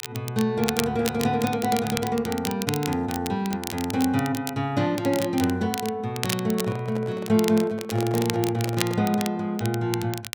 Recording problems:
crackle; vinyl, SNR 9 dB
handling noise; from 6.5 to 9 s; peak -7 dB vs average level

